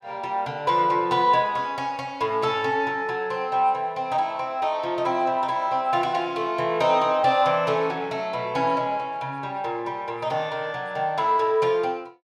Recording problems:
none

